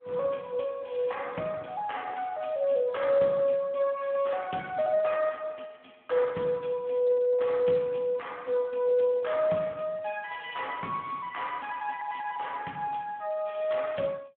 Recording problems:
phone line; 190 Hz to 3.5 kHz, Speex

